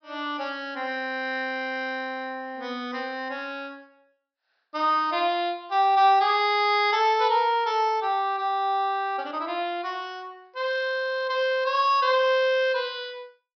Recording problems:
treble missing; nothing above 5.5 kHz

